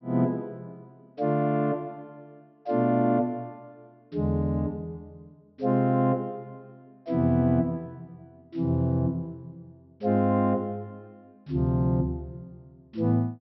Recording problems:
treble cut off; nothing above 5.7 kHz

